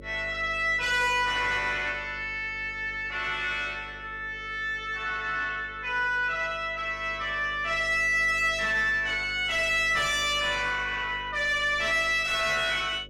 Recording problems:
distortion; soft clipping, signal-to-distortion ratio 9 dB
electrical hum; 50 Hz, harmonics up to 600 Hz, SNR 21 dB

